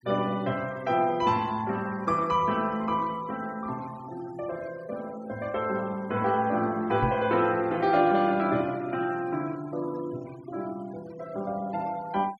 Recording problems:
noise reduction artefacts; signal-to-artefact ratio 23 dB
microphone bump; at 7 s; peak +2 dB vs average level

